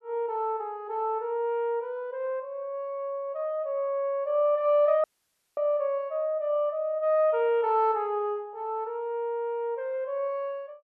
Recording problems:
audio cutting out; at 5 s for 0.5 s

